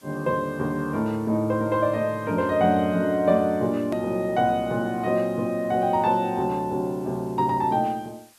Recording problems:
hiss; slope 0 dB per octave, SNR 29 dB
edit click; at 4 s

